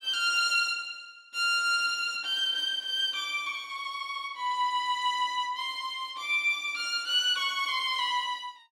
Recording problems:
none

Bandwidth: 16 kHz